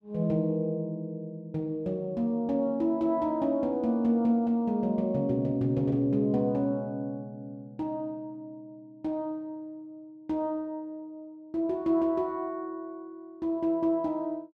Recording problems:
none

